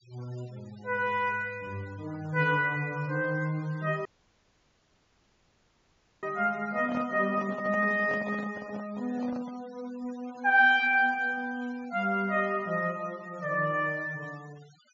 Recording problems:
low-pass filter; nothing above 7.3 kHz
noise reduction artefacts; signal-to-artefact ratio 24 dB
dropout; at 4 s for 2 s
microphone handling noise; from 6.5 to 9.5 s; peak -6 dB vs average level

